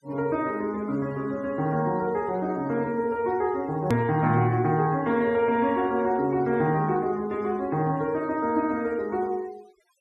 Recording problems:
denoising artefacts; signal-to-artefact ratio 26 dB
hard cut with a click; at 4 s

